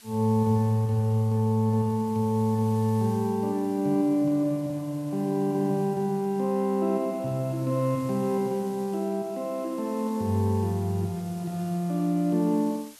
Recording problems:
hiss; slope +2 dB per octave, SNR 24 dB

